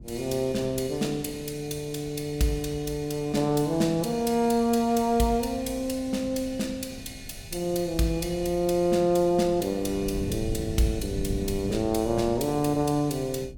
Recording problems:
wind noise; below 170 Hz, SNR 14 dB

